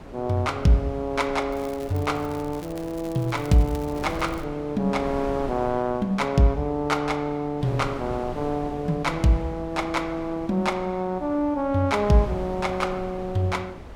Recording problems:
wind on the microphone; below 600 Hz, SNR 14 dB
crackle; from 1.5 to 4.5 s; loose cable, SNR 22 dB

